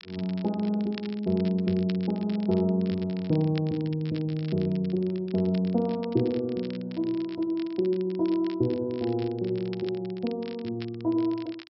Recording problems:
treble cut off; nothing above 5.5 kHz
crackle; vinyl, SNR 20 dB

